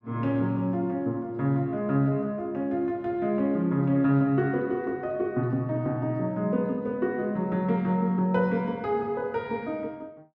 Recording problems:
none

